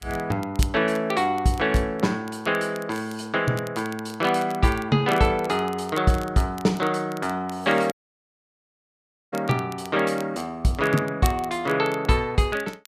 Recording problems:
codec artefacts; Vorbis, log-spectral distance 2 dB, nothing above 12.7 kHz
crackling; vinyl, SNR 20 dB
dropout; at 8 s for 1.5 s

